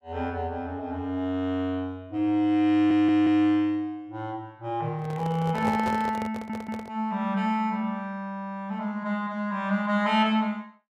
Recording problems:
audio stuttering; at 2.5 s and at 6.5 s
handling noise; from 5 to 7 s; peak -1 dB vs average level

